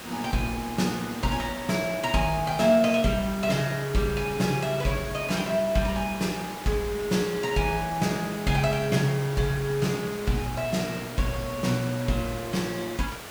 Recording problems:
background hiss; slope -3 dB per octave, SNR 12 dB

